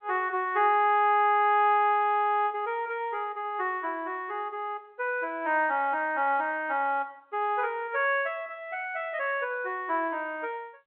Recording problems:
telephone audio; 320 Hz to 3.3 kHz, G.711

